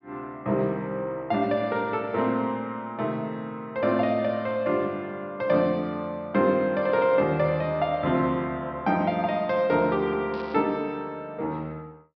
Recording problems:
treble missing; nothing above 5.5 kHz
crackle; at 10 s; loose cable, SNR 26 dB

